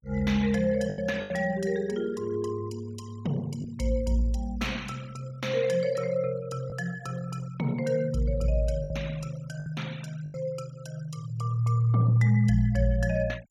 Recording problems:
noise reduction artefacts; signal-to-artefact ratio 21 dB
packet loss; 3% of the sound replaced, filled with the last packet

